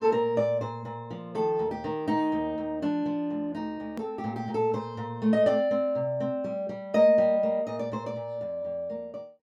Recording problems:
hard cut with a click; at 4 s

